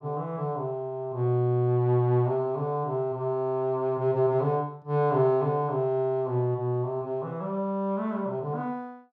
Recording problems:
none

